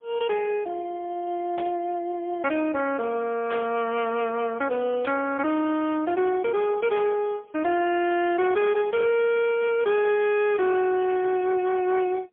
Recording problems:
phone line; 260 Hz to 3.3 kHz, AMR-NB, then MP3
distorted audio; hard clipping, signal-to-distortion ratio 12 dB
static burst; 4 times, first at 1.5 s; peak -7 dB vs average level

